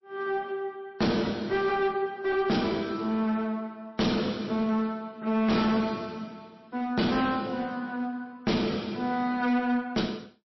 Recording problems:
lossy compression; MP3, log-spectral distance 2 dB, nothing above 5.7 kHz
distorted audio; hard clipping, uneven, signal-to-distortion ratio 7 dB

